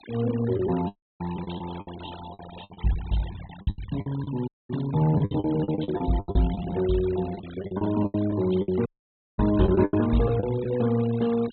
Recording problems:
treble missing; nothing above 4.1 kHz
noise reduction artefacts; signal-to-artefact ratio 18 dB
lost packets; 15% of the sound replaced, filled with the last packet
audio cutting out; at 1 s, at 4.5 s and at 9 s for 0.5 s

